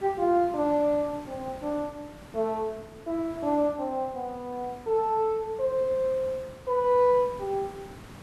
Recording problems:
hiss; slope -5 dB per octave, SNR 19 dB

